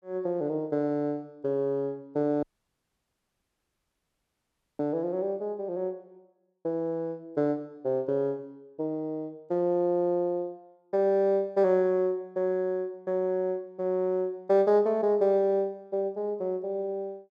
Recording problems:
audio cutting out; at 2.5 s for 2.5 s

